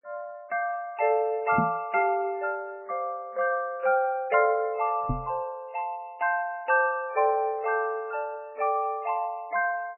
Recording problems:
lossy compression; MP3, log-spectral distance 2 dB, nothing above 2.7 kHz
microphone thump; at 1.5 s and at 5 s; peak +4 dB vs average level

